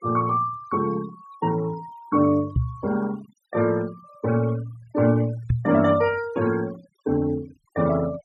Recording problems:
noise reduction artefacts; signal-to-artefact ratio 20 dB
microphone bump; at 2.5 s and at 5.5 s; peak +5 dB vs average level

